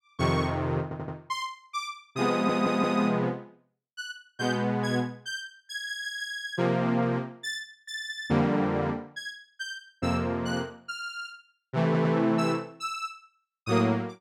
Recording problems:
stutter; 4 times, first at 1 s

